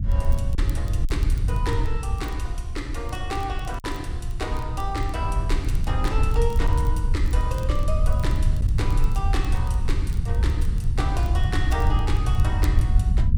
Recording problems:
rumble; below 84 Hz, SNR -7 dB
crackling; vinyl, SNR 19 dB
lost packets; 1.2% of the sound replaced, filled with silence

